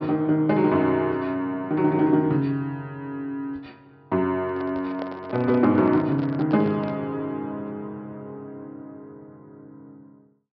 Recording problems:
low-pass filter; nothing above 5.5 kHz
handling noise; from 4.5 to 7 s; peak -7 dB vs average level

